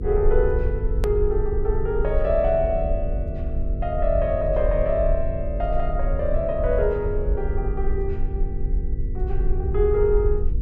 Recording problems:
electrical hum; 50 Hz, harmonics up to 500 Hz, SNR 10 dB
rumble; below 58 Hz, SNR 3 dB
hard cut with a click; at 1 s

